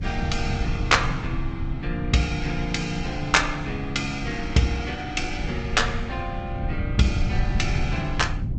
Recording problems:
lossy codec; Vorbis, then G.722, log-spectral distance 3 dB, nothing above 8 kHz
low-frequency rumble; below 130 Hz, SNR 5 dB

